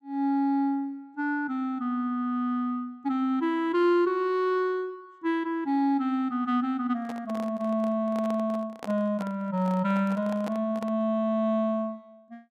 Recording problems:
microphone handling noise; from 7 to 11 s; peak -6 dB vs average level

